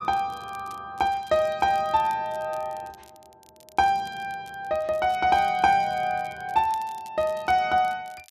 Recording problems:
crackle; vinyl, SNR 27 dB

